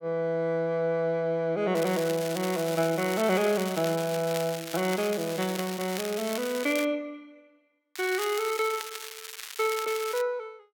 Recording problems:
crackling; from 2 to 7 s and from 8 to 10 s; loose cable, SNR 10 dB

